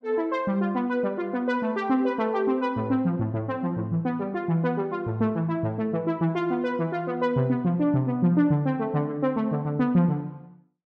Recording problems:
none

